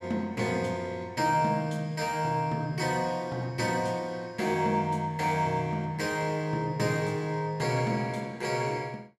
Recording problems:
none

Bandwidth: 14 kHz